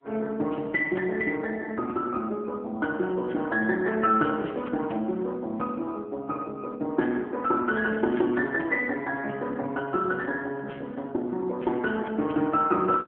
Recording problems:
telephone audio; 190 Hz to 2.6 kHz, AMR-NB

